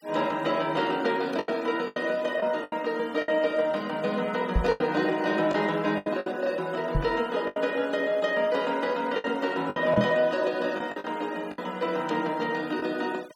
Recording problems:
denoising artefacts; signal-to-artefact ratio 23 dB
packet loss; 7% of the sound replaced, filled with the last packet
microphone thump; at 4.5 s, at 7 s and at 10 s; peak +6 dB vs average level

